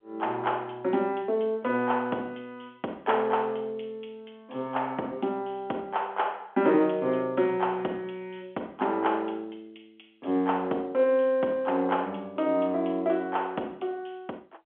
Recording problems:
phone line; 220 Hz to 3.4 kHz, G.711

